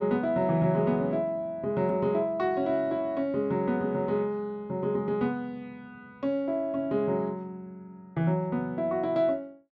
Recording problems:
none

